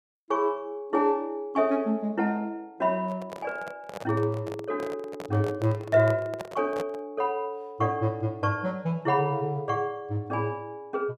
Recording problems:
handling noise; from 3 to 7 s; peak -3 dB vs average level

